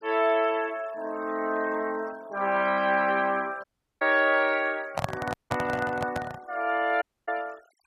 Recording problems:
denoising artefacts; signal-to-artefact ratio 24 dB
audio cutting out; at 3.5 s, at 5.5 s and at 7 s
handling noise; from 5 to 6.5 s; peak +2 dB vs average level

